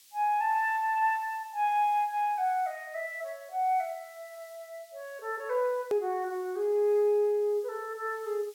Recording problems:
background hiss; SNR 26 dB
click at an edit; at 6 s

